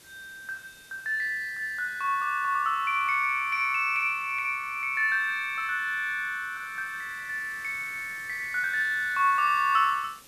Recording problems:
hiss; slope -1 dB per octave, SNR 23 dB

